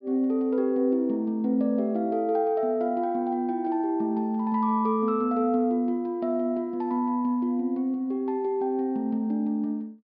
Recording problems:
treble cut off; nothing above 5.5 kHz

